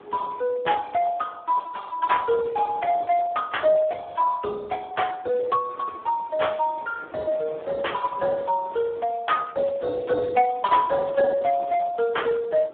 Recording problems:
telephone audio; 190 Hz to 3.6 kHz, Speex
wind on the microphone; below 1 kHz, SNR 22 dB

